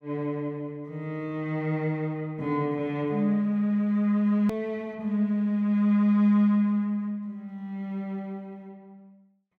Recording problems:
edit click; at 4.5 s

